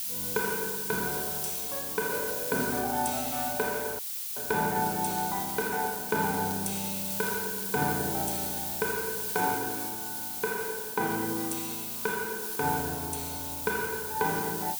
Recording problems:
hiss; SNR 0 dB
crackle; at 2.5 s and from 5 to 7.5 s; loose cable, SNR 18 dB
audio cutting out; at 4 s

